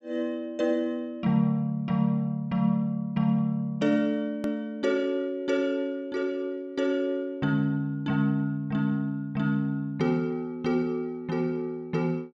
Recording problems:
hard cut with a click; at 4.5 s

